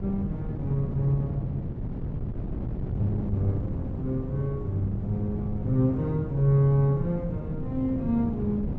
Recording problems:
low-pass filter; nothing above 7.8 kHz
wind noise; below 210 Hz, SNR 5 dB

